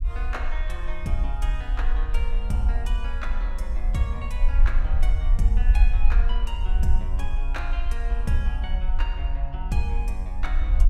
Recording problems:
low-frequency rumble; below 48 Hz, SNR -6 dB

